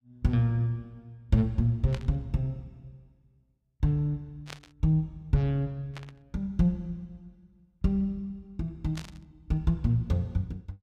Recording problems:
burst of static; 4 times, first at 2 s; peak -8 dB vs average level

